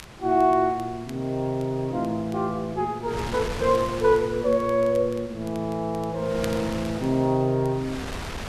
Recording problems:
wind noise; below 2 kHz, SNR 13 dB
crackling; vinyl, SNR 26 dB

